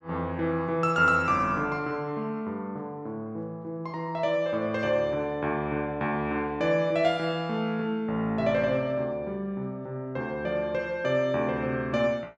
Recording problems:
none

